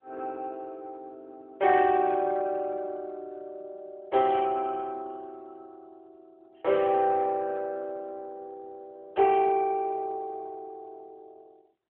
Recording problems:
phone line; 340 Hz to 3.3 kHz, AMR-NB

